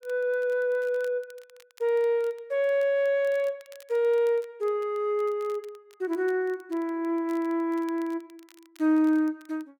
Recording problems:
crackle; vinyl, SNR 30 dB

